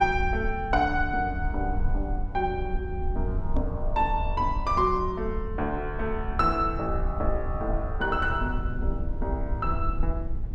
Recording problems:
rumble; below 68 Hz, SNR 4 dB
knock on the microphone; at 3.5 s; peak 0 dB vs average level

